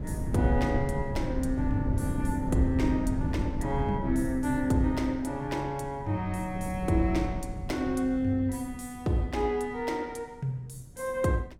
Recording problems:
wind noise; below 170 Hz, SNR 5 dB

